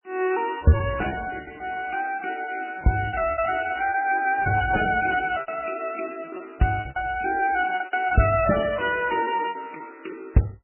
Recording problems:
codec artefacts; MP3, log-spectral distance 6 dB, nothing above 2.9 kHz
lost packets; 15% of the sound replaced, filled with repeated pitch periods

